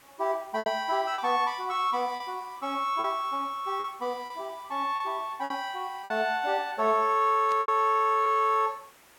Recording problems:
background hiss; SNR 27 dB
packet loss; 6% of the sound replaced, filled with repeated pitch periods
burst of static; at 7.5 s; peak -12 dB vs average level

